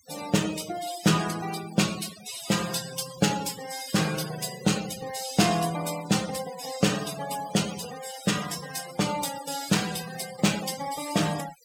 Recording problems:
denoising artefacts; signal-to-artefact ratio 10 dB

